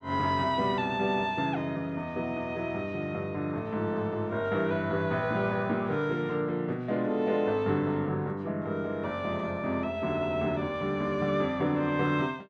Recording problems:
none

